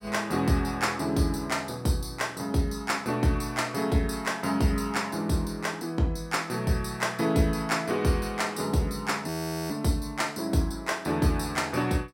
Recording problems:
frozen audio; at 9.5 s

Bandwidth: 16.5 kHz